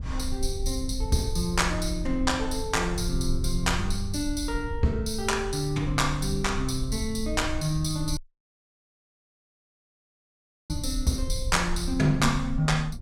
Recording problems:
low-frequency rumble; below 68 Hz, SNR 7 dB
audio cutting out; at 8 s for 2.5 s

